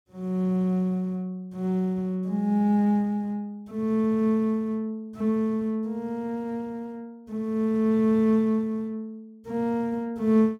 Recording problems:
none

